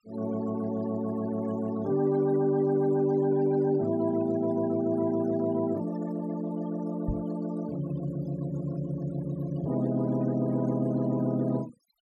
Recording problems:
noise reduction artefacts; signal-to-artefact ratio 22 dB
knock on the microphone; at 7 s; peak 0 dB vs average level

